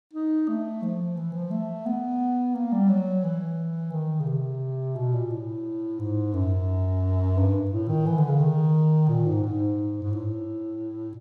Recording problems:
none

